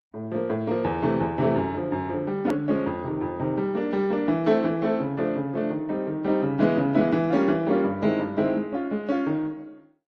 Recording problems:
lossy compression; Opus, then AAC, log-spectral distance 2 dB, nothing above 13.1 kHz
edit click; at 2.5 s

